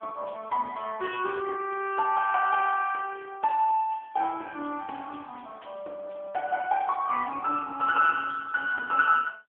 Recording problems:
telephone audio; 300 Hz to 3.3 kHz, AMR-NB

